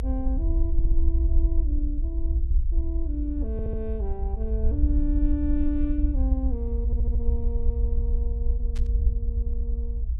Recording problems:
low-frequency rumble; below 62 Hz, SNR -7 dB
stutter; at 0.5 s, at 3.5 s and at 7 s
static burst; at 9 s; peak -7 dB vs average level

